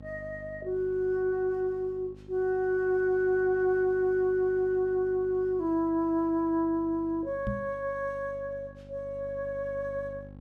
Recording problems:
electrical hum; 50 Hz, harmonics up to 850 Hz, SNR 20 dB
knock on the microphone; at 7.5 s; peak -1 dB vs average level

